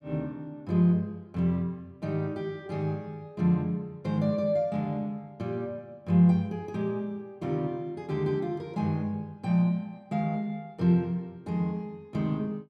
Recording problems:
none

